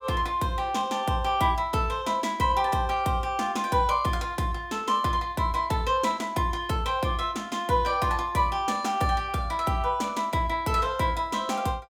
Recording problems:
none

